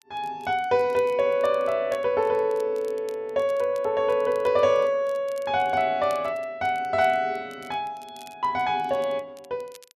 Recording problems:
crackling; vinyl, SNR 28 dB

